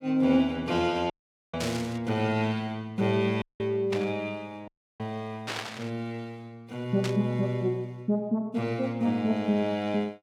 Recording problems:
dropout; at 1 s, at 3.5 s and at 4.5 s
burst of static; 4 times, first at 1.5 s; peak -1 dB vs average level

